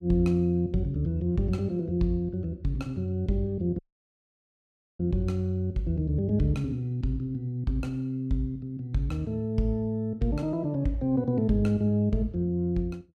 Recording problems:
audio cutting out; at 4 s for 1 s

